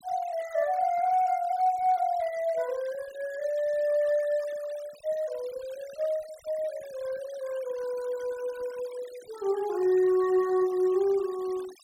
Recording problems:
denoising artefacts; signal-to-artefact ratio 22 dB

